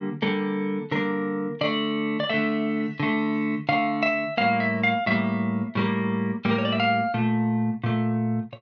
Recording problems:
none

